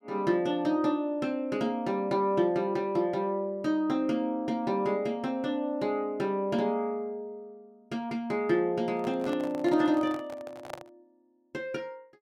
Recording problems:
microphone handling noise; from 9 to 11 s; peak -5 dB vs average level

